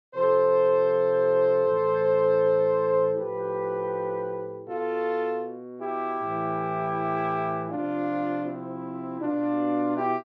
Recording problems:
none

